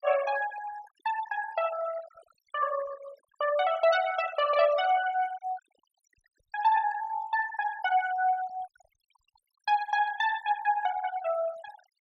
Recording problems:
denoising artefacts; signal-to-artefact ratio 15 dB

